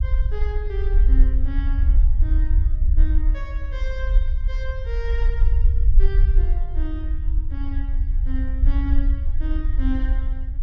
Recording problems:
rumble; below 52 Hz, SNR -13 dB

